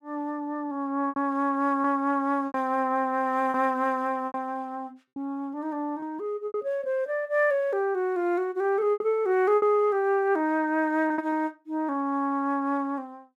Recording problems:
packet loss; 5% of the sound replaced, filled with repeated pitch periods

